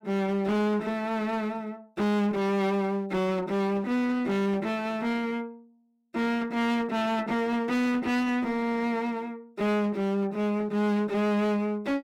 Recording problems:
distorted audio; hard clipping, uneven, signal-to-distortion ratio 7 dB

